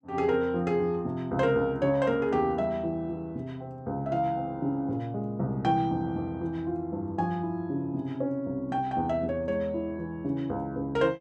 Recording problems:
none

